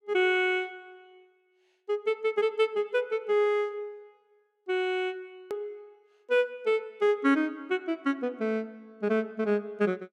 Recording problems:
click at an edit; at 5.5 s

